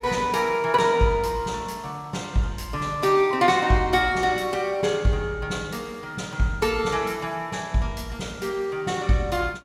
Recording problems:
none

